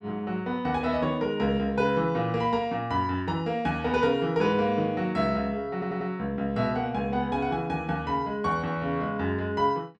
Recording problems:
audio stuttering; at 5.5 s

